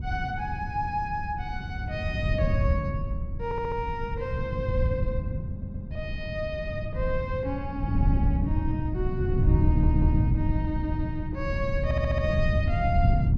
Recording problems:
wind on the microphone; below 130 Hz, SNR -3 dB
audio stuttering; 4 times, first at 3.5 s

